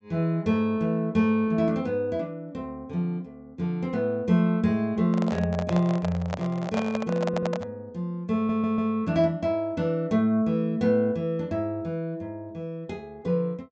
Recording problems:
treble missing; nothing above 8 kHz
handling noise; from 5 to 7.5 s; peak 0 dB vs average level
audio stuttering; at 7.5 s and at 8.5 s

